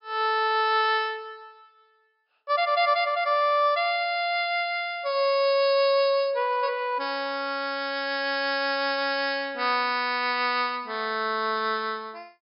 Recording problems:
low-pass filter; nothing above 5.5 kHz

